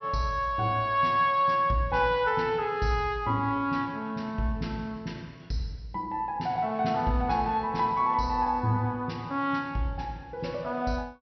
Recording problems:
low-pass filter; nothing above 5.8 kHz

